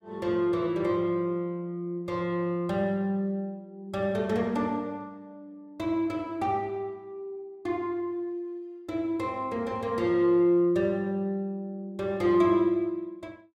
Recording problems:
none

